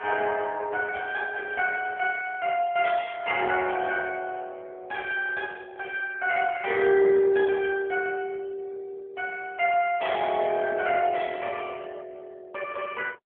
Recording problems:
telephone audio; 320 Hz to 3.3 kHz, AMR-NB

